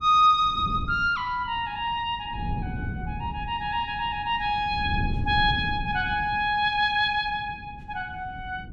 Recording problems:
wind noise; below 180 Hz, SNR 11 dB

